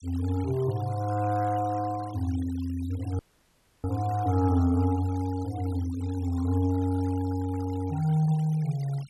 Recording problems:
noise reduction artefacts; signal-to-artefact ratio 21 dB
dropout; at 3 s for 0.5 s

